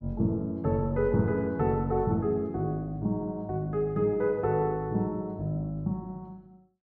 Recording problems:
none

